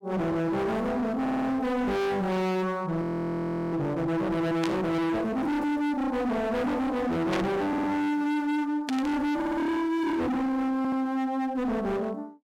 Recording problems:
distortion; hard clipping, signal-to-distortion ratio 6 dB
audio stuttering; 4 times, first at 1 s
frozen audio; at 3 s for 0.5 s
burst of static; at 4.5 s, at 7.5 s and at 9 s; peak -1 dB vs average level

